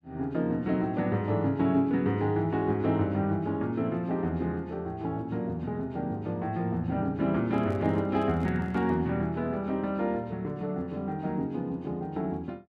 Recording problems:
microphone handling noise; from 7.5 to 9 s; peak -12 dB vs average level

